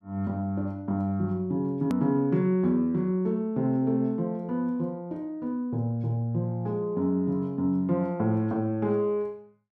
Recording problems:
edit click; at 2 s

